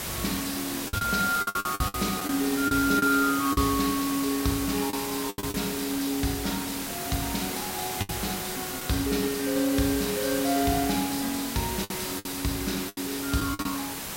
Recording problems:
hiss; slope -2 dB per octave, SNR 4 dB
packet loss; 7% of the sound replaced, filled with the last packet

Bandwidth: 16 kHz